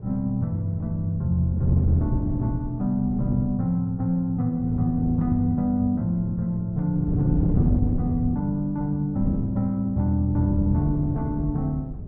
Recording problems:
wind noise; below 200 Hz, SNR 6 dB

